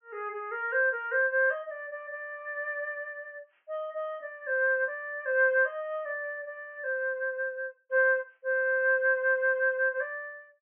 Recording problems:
treble missing; nothing above 3.1 kHz

